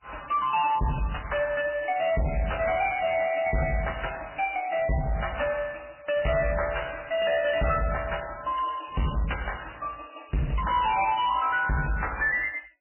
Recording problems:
lossy codec; MP3, log-spectral distance 11 dB, nothing above 2.7 kHz
distorted audio; hard clipping, uneven, signal-to-distortion ratio 7 dB

